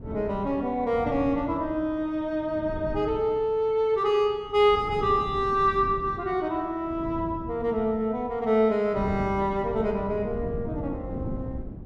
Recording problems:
wind noise; below 240 Hz, SNR 12 dB

